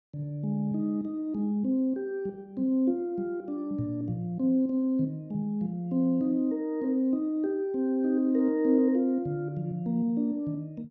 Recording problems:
none

